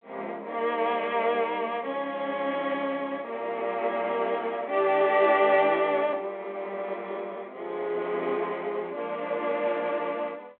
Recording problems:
telephone audio; 300 Hz to 3.5 kHz, G.726

